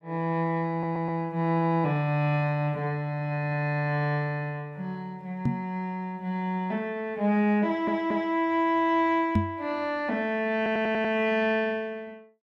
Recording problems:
stutter; at 0.5 s, at 7.5 s and at 11 s
microphone thump; at 5.5 s and at 9.5 s; peak +6 dB vs average level

